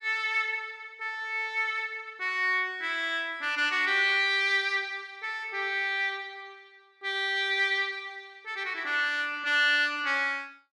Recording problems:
none

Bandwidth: 13 kHz